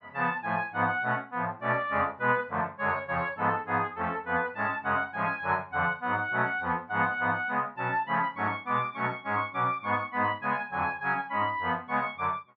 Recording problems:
none

